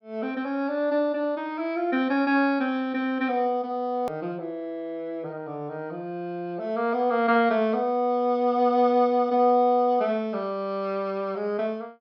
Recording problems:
treble cut off; nothing above 5.5 kHz
hard cut with a click; at 4 s

